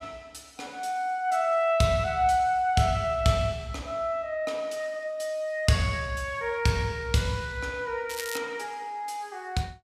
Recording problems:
crackle; at 8 s; loose cable, SNR 10 dB

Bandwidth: 14.5 kHz